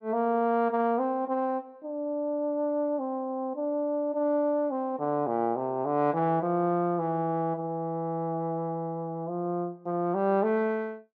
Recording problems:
none

